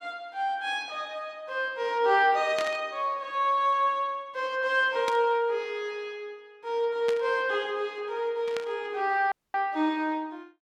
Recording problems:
burst of static; 4 times, first at 2.5 s; peak -3 dB vs average level
audio cutting out; at 9.5 s

